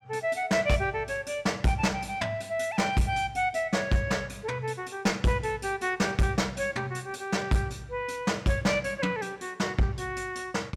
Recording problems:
distorted audio; hard clipping, uneven, signal-to-distortion ratio 11 dB

